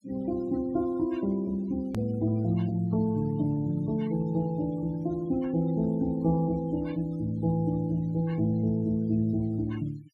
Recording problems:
noise reduction artefacts; signal-to-artefact ratio 25 dB
click at an edit; at 2 s

